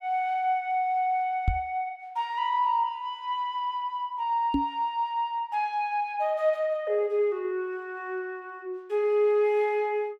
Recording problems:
microphone thump; at 1.5 s and at 4.5 s; peak +5 dB vs average level

